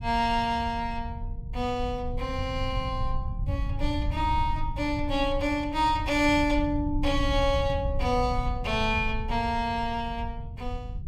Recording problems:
rumble; below 94 Hz, SNR 6 dB

